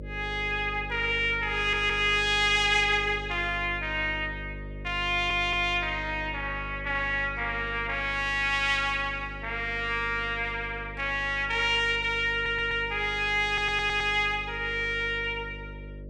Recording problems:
hum; 50 Hz, harmonics up to 600 Hz, SNR 15 dB
stutter; 4 times, first at 1.5 s

